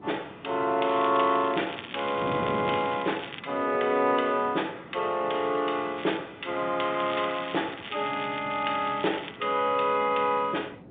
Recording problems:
telephone audio; 240 Hz to 3.6 kHz, G.711
wind on the microphone; below 490 Hz, SNR 17 dB
crackle; from 1 to 3.5 s, at 6 s and from 7 to 9.5 s; loose cable, SNR 14 dB

